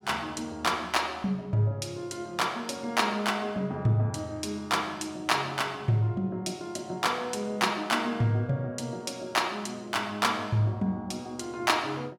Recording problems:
none

